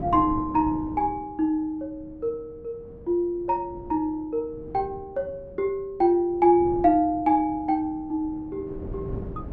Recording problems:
wind on the microphone; below 300 Hz, SNR 16 dB

